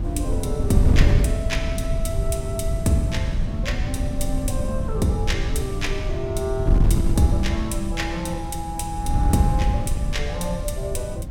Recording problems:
electrical hum; 50 Hz, harmonics up to 450 Hz, SNR 18 dB
wind noise; below 110 Hz, SNR -2 dB

